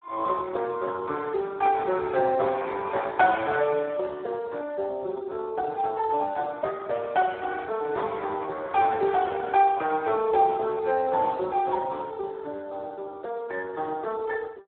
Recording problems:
telephone audio; 300 Hz to 2.1 kHz, Speex

